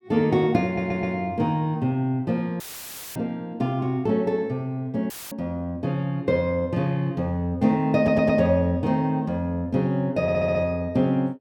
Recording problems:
stutter; at 0.5 s, at 8 s and at 10 s
dropout; at 2.5 s for 0.5 s and at 5 s; filled with static

